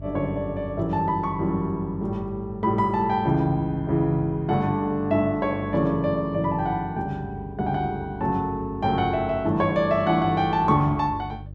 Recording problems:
hum; 50 Hz, harmonics up to 500 Hz, SNR 15 dB

